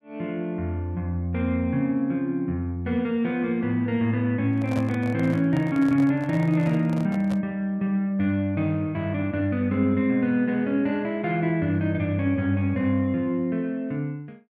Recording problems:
microphone handling noise; from 4.5 to 7.5 s; peak -5 dB vs average level

